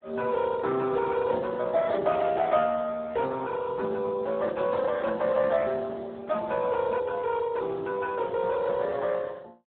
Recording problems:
telephone audio; 240 Hz to 2.5 kHz, Speex

